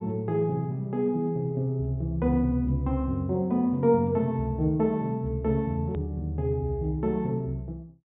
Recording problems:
treble missing; nothing above 4 kHz
edit click; at 6 s

